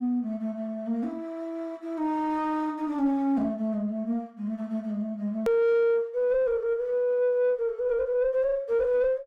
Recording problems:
distortion; soft clipping, signal-to-distortion ratio 9 dB
edit click; at 5.5 s

